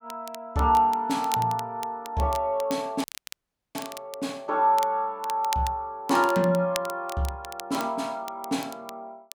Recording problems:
crackle; vinyl, SNR 16 dB
audio cutting out; at 3 s for 0.5 s

